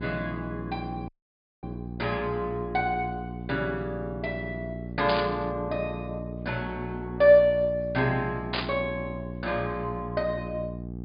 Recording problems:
treble cut off; nothing above 5 kHz
hum; 60 Hz, harmonics up to 780 Hz, SNR 9 dB
audio cutting out; at 1 s for 0.5 s
burst of static; at 5 s and at 8.5 s; peak +2 dB vs average level

